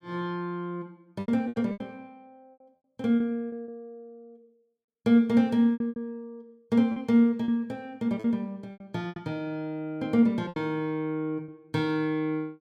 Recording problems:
packet loss; 9% of the sound replaced, filled with repeated pitch periods

